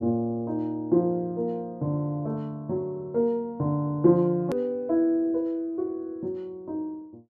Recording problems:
edit click; at 4.5 s

